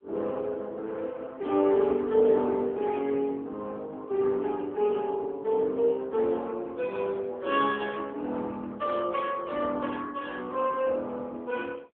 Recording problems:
phone line; 220 Hz to 3.3 kHz, AMR-NB

